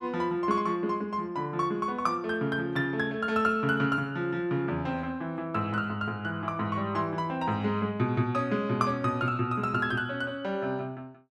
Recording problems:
none

